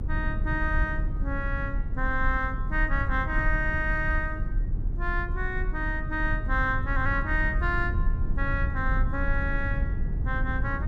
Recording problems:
rumble; below 76 Hz, SNR 1 dB

